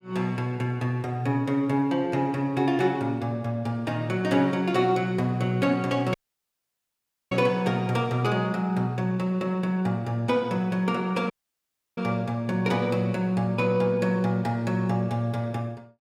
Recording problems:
audio cutting out; at 6 s for 1 s and at 11 s for 0.5 s

